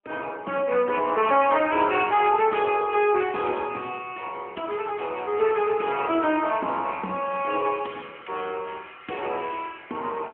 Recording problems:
phone line; 220 Hz to 3.3 kHz, AMR-NB

